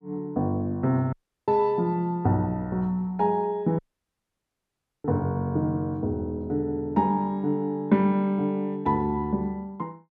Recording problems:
dropout; at 1 s and at 4 s for 1.5 s

